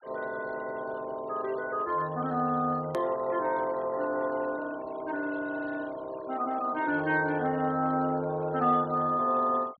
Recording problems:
treble cut off; nothing above 4.5 kHz
noise reduction artefacts; signal-to-artefact ratio 23 dB
click at an edit; at 3 s

